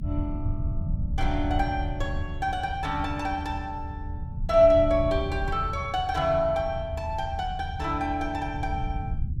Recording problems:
low-frequency rumble; below 100 Hz, SNR 7 dB

